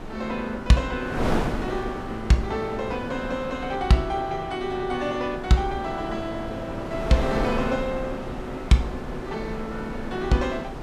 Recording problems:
wind on the microphone; below 680 Hz, SNR 7 dB

